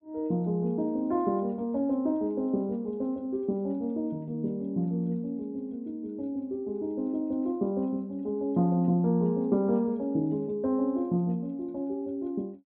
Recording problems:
treble cut off; nothing above 4 kHz

